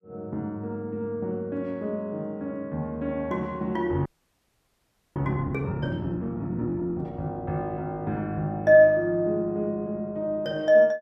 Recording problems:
frozen audio; at 4 s for 1 s

